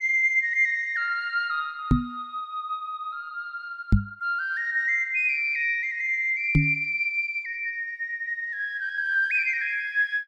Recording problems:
knock on the microphone; at 2 s, at 4 s and at 6.5 s; peak +9 dB vs average level

